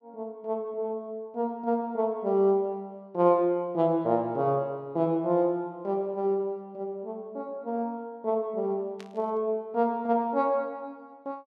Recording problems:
static burst; at 9 s; peak -14 dB vs average level

